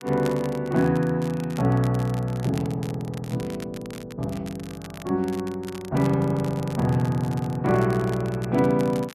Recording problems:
crackle; vinyl, SNR 20 dB

